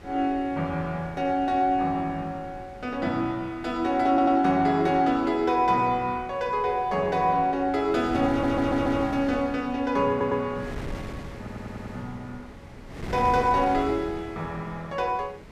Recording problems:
wind noise; below 530 Hz, SNR 16 dB
stutter; 4 times, first at 4 s

